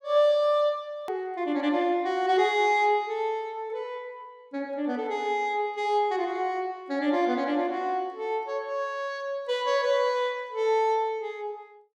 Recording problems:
hard cut with a click; at 1 s

